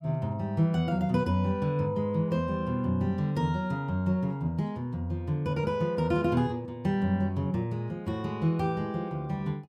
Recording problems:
none

